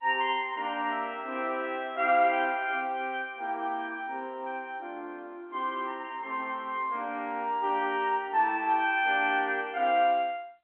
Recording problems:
telephone audio; 240 Hz to 3.4 kHz, G.711

